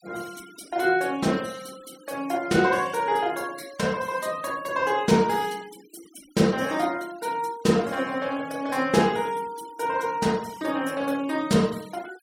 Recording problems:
denoising artefacts; signal-to-artefact ratio 21 dB

